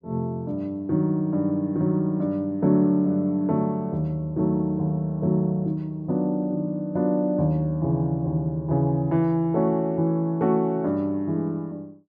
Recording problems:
none

